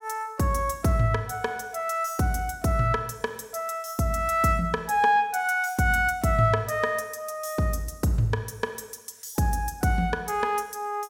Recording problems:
none

